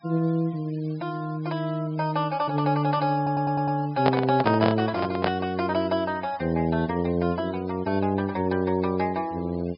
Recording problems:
low-pass filter; nothing above 5.5 kHz
noise reduction artefacts; signal-to-artefact ratio 24 dB
stutter; at 3 s
microphone handling noise; from 4 to 5.5 s; peak +4 dB vs average level

